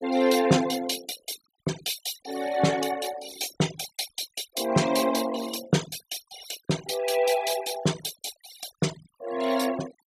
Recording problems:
denoising artefacts; signal-to-artefact ratio 13 dB

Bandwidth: 14.5 kHz